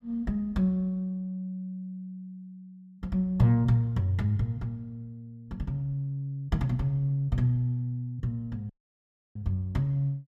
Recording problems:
dropout; at 8.5 s for 0.5 s

